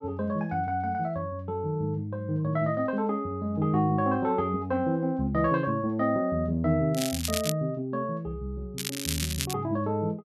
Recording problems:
crackle; at 7 s and at 9 s; loose cable, SNR 4 dB

